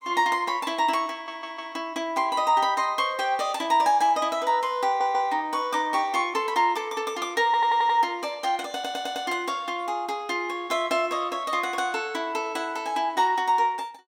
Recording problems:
audio stuttering; 4 times, first at 1 s

